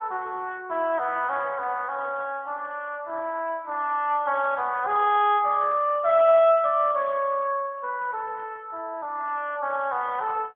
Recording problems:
phone line; 300 Hz to 3.5 kHz, AMR-NB

